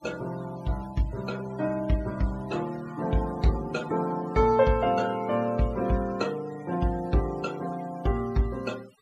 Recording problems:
denoising artefacts; signal-to-artefact ratio 21 dB

